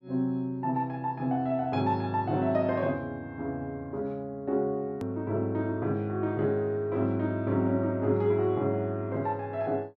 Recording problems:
hard cut with a click; at 5 s

